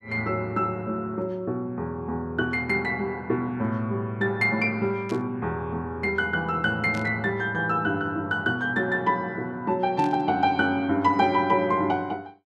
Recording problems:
burst of static; at 5 s, at 7 s and at 10 s; peak -12 dB vs average level

